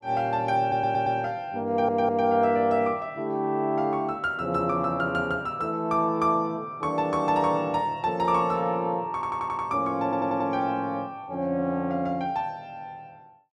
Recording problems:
stutter; 4 times, first at 0.5 s

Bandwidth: 12 kHz